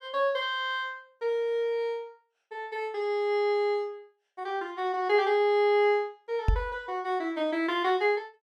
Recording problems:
microphone bump; at 6.5 s; peak +6 dB vs average level

